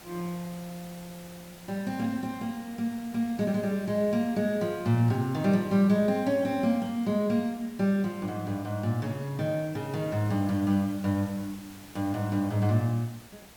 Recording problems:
background hiss; slope -3 dB per octave, SNR 21 dB

